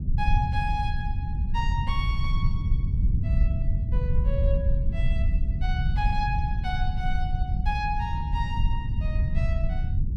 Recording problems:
low-frequency rumble; below 92 Hz, SNR -6 dB

